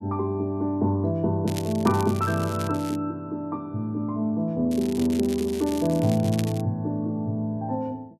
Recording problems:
crackle; from 1.5 to 3 s and from 4.5 to 6.5 s; loose cable, SNR 15 dB

